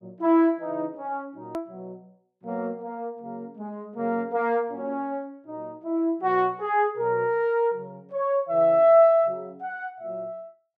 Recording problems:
click at an edit; at 1.5 s

